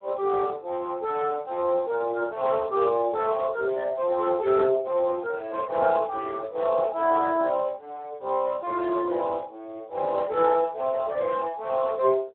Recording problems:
phone line; 300 Hz to 2.9 kHz, Speex

